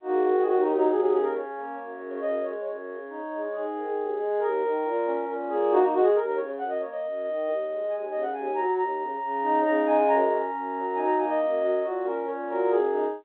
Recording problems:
phone line; 320 Hz to 3.7 kHz, G.711

